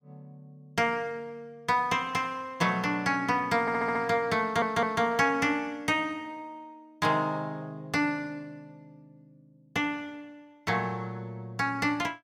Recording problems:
audio stuttering; at 3.5 s and at 4.5 s

